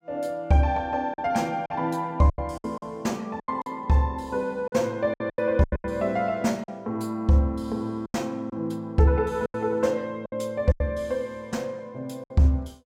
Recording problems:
lost packets; 9% of the sound replaced, filled with silence

